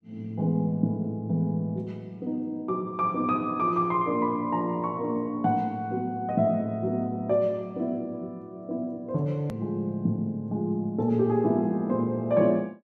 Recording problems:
click at an edit; at 9.5 s

